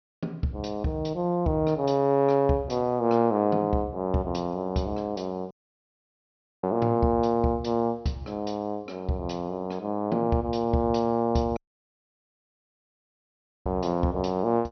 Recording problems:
treble cut off; nothing above 6 kHz
audio cutting out; at 5.5 s for 1 s and at 12 s for 2 s

